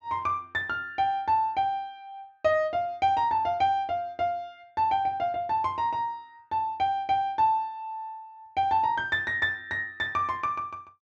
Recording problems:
low-pass filter; nothing above 8 kHz

